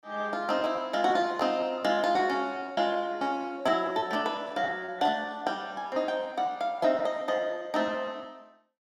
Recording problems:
packet loss; 12% of the sound replaced, filled with repeated pitch periods

